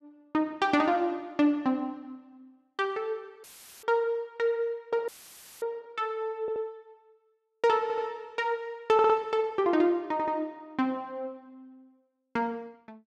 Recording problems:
audio cutting out; at 3.5 s and at 5 s for 0.5 s; filled with static
audio stuttering; 4 times, first at 6.5 s

